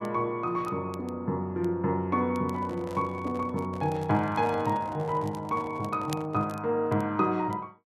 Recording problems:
crackle; vinyl, SNR 25 dB
handling noise; from 2.5 to 6.5 s; peak -9 dB vs average level

